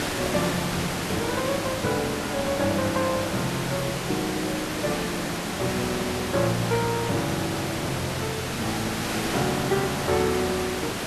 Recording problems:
background hiss; slope -4 dB per octave, SNR 1 dB

